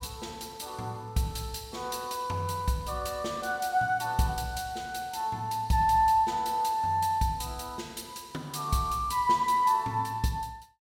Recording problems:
none

